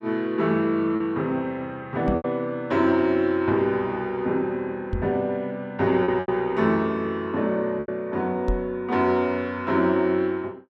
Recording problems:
packet loss; 3% of the sound replaced, filled with repeated pitch periods
microphone bump; at 2 s, at 5 s and at 8.5 s; peak +1 dB vs average level

